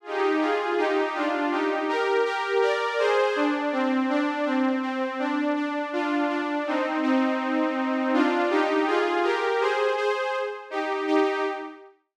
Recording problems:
none

